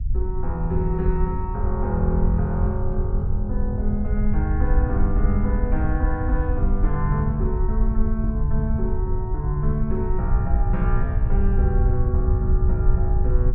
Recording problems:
low-frequency rumble; below 72 Hz, SNR -3 dB

